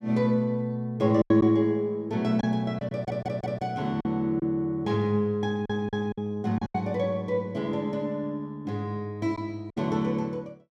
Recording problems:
lost packets; 5% of the sound replaced, filled with silence
stutter; at 3 s and at 5.5 s

